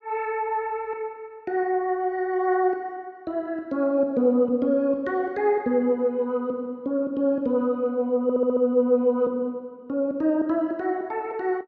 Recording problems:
stutter; at 8 s

